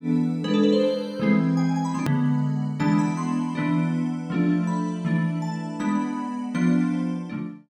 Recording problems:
edit click; at 2 s

